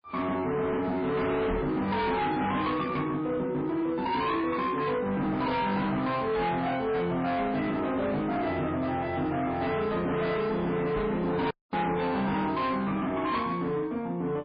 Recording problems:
codec artefacts; MP3, log-spectral distance 2 dB, nothing above 4.8 kHz
distorted audio; hard clipping, signal-to-distortion ratio 8 dB
knock on the microphone; at 1.5 s and at 11 s; peak -1 dB vs average level
audio cutting out; at 12 s

